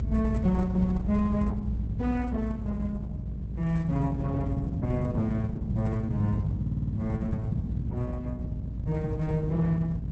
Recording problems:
lossy compression; Opus, log-spectral distance 2 dB
hum; 50 Hz, harmonics up to 1.8 kHz, SNR 25 dB
rumble; below 150 Hz, strongest tone 58 Hz, SNR -1 dB
audio stuttering; at 6.5 s

